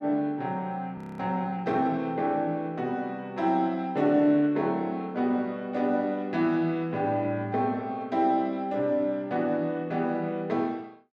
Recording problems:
frozen audio; at 1 s

